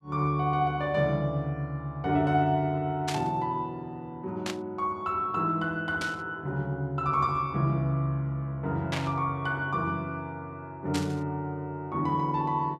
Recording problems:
burst of static; 5 times, first at 3 s; peak 0 dB vs average level

